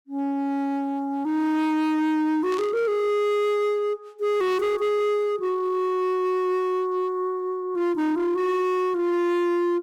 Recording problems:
distortion; hard clipping, signal-to-distortion ratio 10 dB
burst of static; at 2.5 s; peak -11 dB vs average level

